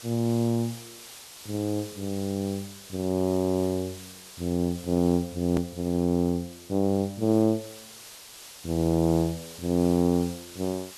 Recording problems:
background hiss; slope +1 dB per octave, SNR 16 dB
click at an edit; at 5.5 s

